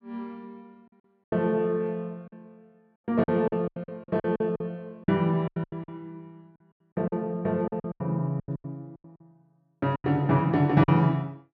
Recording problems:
lost packets; 14% of the sound replaced, filled with silence

